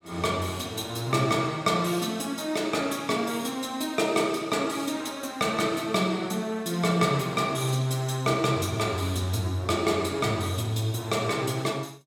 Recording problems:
none

